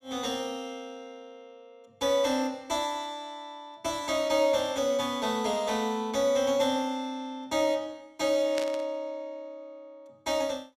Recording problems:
burst of static; at 8.5 s; peak -3 dB vs average level

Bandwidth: 15 kHz